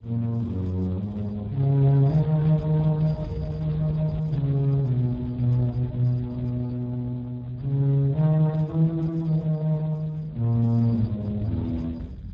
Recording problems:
lossy compression; MP3, then Speex, log-spectral distance 2 dB
rumble; below 140 Hz, SNR 16 dB

